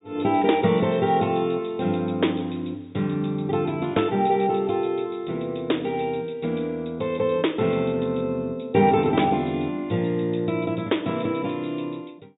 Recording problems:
low-pass filter; nothing above 4 kHz

